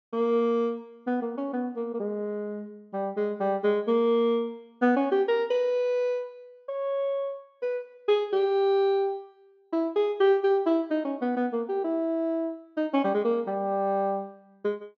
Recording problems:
treble cut off; nothing above 8 kHz

